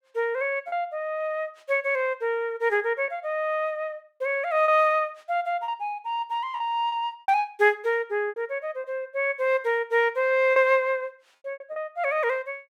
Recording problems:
lost packets; 5% of the sound replaced, filled with repeated pitch periods

